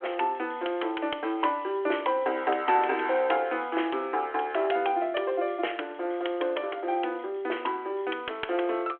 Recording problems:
phone line; 280 Hz to 3.3 kHz, G.726

